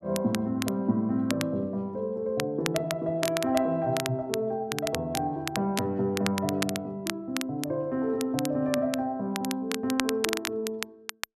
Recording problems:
crackling; vinyl, SNR 7 dB

